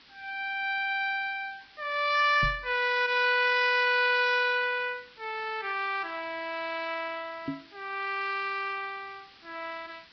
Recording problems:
lossy compression; Vorbis, log-spectral distance 7 dB, nothing above 5.3 kHz
background hiss; SNR 26 dB
microphone thump; at 2.5 s and at 7.5 s; peak -2 dB vs average level

